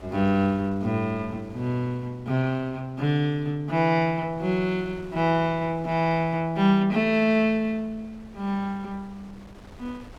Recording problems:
wind noise; below 630 Hz, SNR 24 dB

